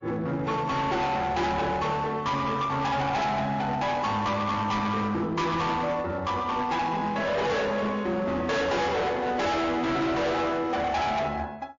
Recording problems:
lossy compression; MP3, log-spectral distance 2 dB, nothing above 6.5 kHz
distortion; hard clipping, signal-to-distortion ratio 6 dB

